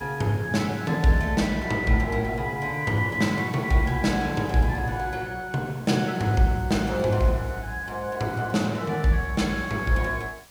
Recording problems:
background hiss; slope -1 dB per octave, SNR 25 dB

